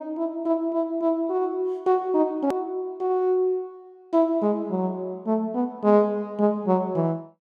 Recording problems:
click at an edit; at 2.5 s

